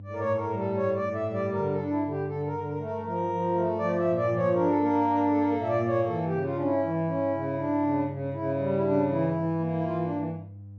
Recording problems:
hum; 50 Hz, harmonics up to 500 Hz, SNR 16 dB

